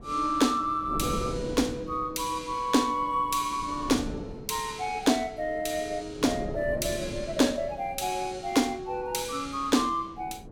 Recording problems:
wind on the microphone; below 390 Hz, SNR 12 dB

